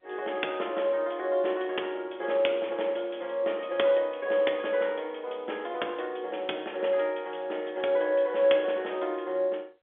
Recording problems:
phone line; 280 Hz to 3.5 kHz, G.711

